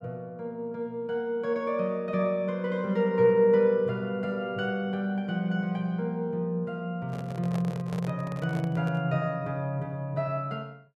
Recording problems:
handling noise; from 7 to 9 s; peak -6 dB vs average level

